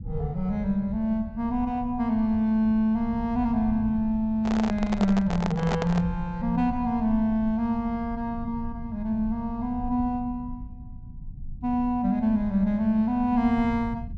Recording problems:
treble missing; nothing above 8 kHz
rumble; below 110 Hz, SNR 13 dB
microphone handling noise; from 4.5 to 6 s; peak -1 dB vs average level

